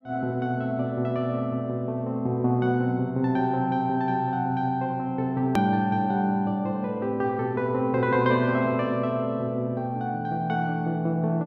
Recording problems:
hard cut with a click; at 5.5 s

